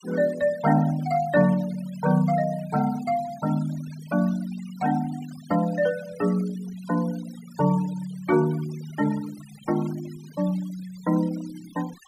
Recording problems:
denoising artefacts; signal-to-artefact ratio 19 dB

